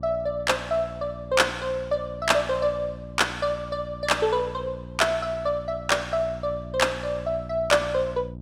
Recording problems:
hum; 60 Hz, harmonics up to 660 Hz, SNR 14 dB

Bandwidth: 16.5 kHz